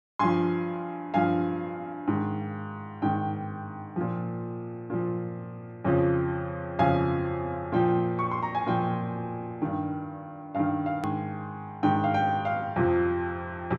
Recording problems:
hard cut with a click; at 11 s

